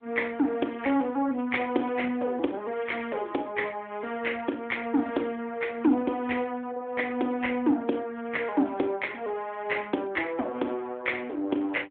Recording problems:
telephone audio; 260 Hz to 3.6 kHz, AMR-NB

